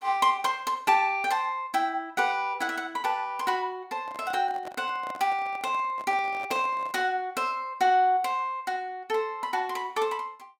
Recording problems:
microphone handling noise; from 4 to 7 s; peak -8 dB vs average level

